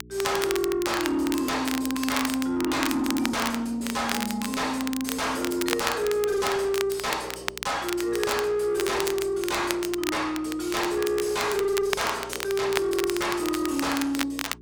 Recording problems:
distorted audio; soft clipping, signal-to-distortion ratio 7 dB
hum; 60 Hz, harmonics up to 420 Hz, SNR 22 dB
crackle; vinyl, SNR 7 dB

